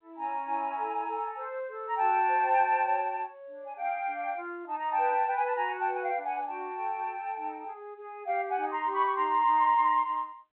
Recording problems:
telephone audio; 300 Hz to 3.3 kHz, G.711

